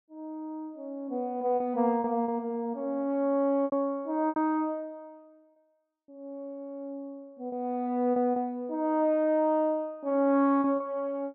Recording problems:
lost packets; 5% of the sound replaced, filled with repeated pitch periods

